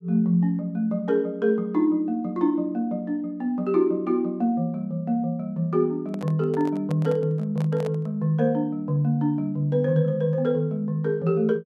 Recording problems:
handling noise; from 6 to 8 s; peak -9 dB vs average level

